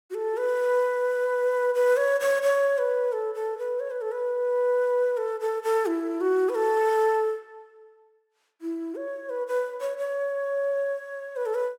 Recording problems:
none

